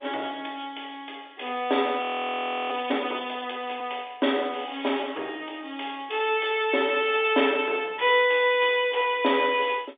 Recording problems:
telephone audio; 300 Hz to 3.6 kHz, G.711
audio freezing; at 2 s for 0.5 s

